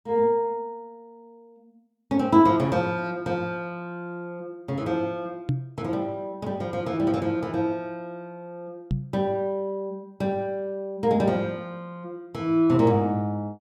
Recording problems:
knock on the microphone; at 5.5 s and at 9 s; peak +4 dB vs average level

